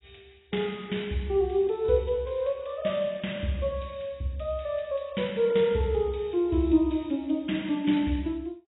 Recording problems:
lossy compression; AAC, log-spectral distance 4 dB, nothing above 3.8 kHz

